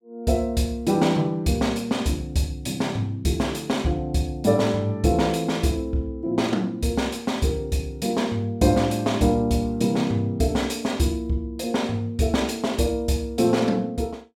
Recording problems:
none

